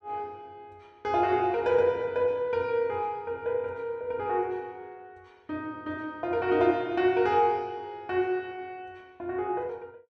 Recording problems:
none

